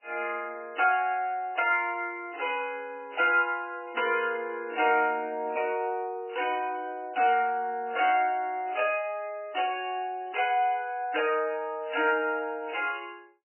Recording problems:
codec artefacts; MP3, log-spectral distance 3 dB, nothing above 2.5 kHz

